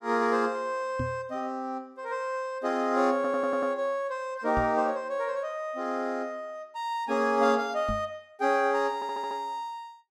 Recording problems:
microphone thump; at 1 s, at 4.5 s and at 8 s; peak -1 dB vs average level
audio stuttering; at 3 s and at 9 s

